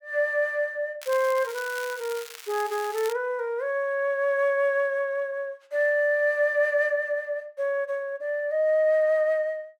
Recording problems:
crackle; from 1 to 3 s; loose cable, SNR 15 dB

